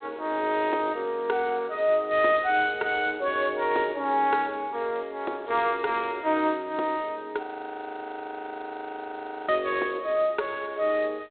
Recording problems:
telephone audio; 300 Hz to 3.7 kHz, G.726
frozen audio; at 7.5 s for 2 s

